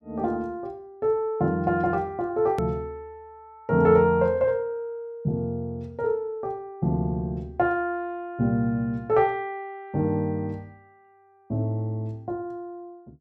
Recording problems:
hard cut with a click; at 2.5 s

